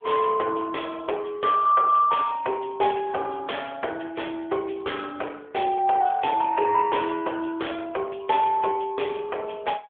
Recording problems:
telephone audio; 340 Hz to 3.4 kHz, AMR-NB

